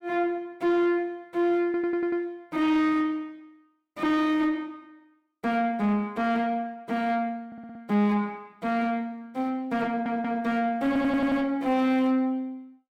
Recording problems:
distortion; soft clipping, signal-to-distortion ratio 10 dB
audio stuttering; 4 times, first at 1.5 s

